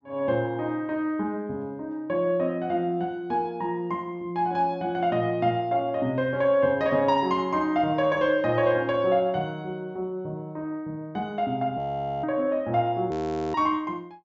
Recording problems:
treble missing; nothing above 7.6 kHz
audio freezing; at 12 s and at 13 s

